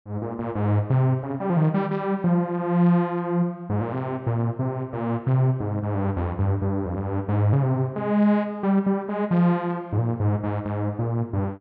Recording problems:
none

